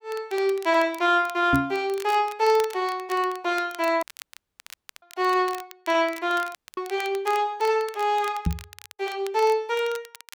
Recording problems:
crackling; vinyl, SNR 20 dB
microphone bump; at 1.5 s and at 8.5 s; peak +5 dB vs average level
dropout; at 4 s for 1 s and at 6.5 s

